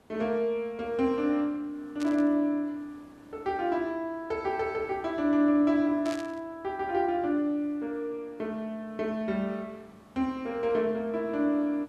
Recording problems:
background hiss; slope -7 dB per octave, SNR 29 dB
static burst; at 2 s and at 6 s; peak -9 dB vs average level

